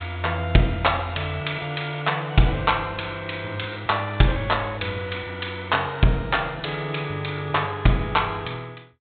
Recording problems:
treble cut off; nothing above 4 kHz

